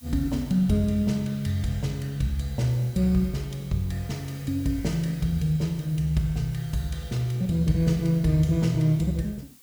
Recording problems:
hiss; slope +1 dB per octave, SNR 24 dB

